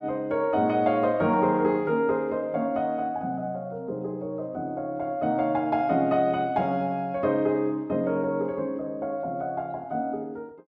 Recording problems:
none

